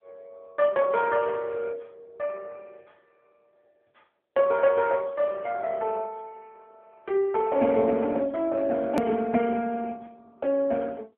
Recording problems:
telephone audio; 150 Hz to 2.8 kHz, AMR-NB
click at an edit; at 9 s

